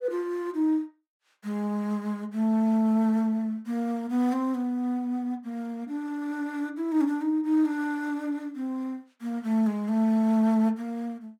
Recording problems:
none

